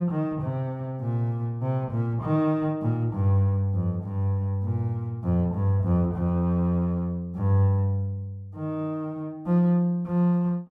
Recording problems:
none

